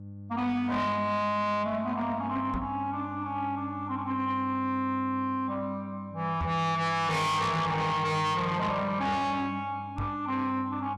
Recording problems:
distortion; soft clipping, signal-to-distortion ratio 7 dB
electrical hum; 50 Hz, harmonics up to 600 Hz, SNR 15 dB
knock on the microphone; at 2.5 s, at 6.5 s and at 10 s; peak +1 dB vs average level

